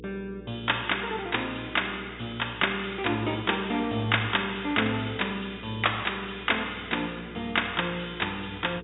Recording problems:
low-pass filter; nothing above 4 kHz
electrical hum; 60 Hz, harmonics up to 480 Hz, SNR 17 dB

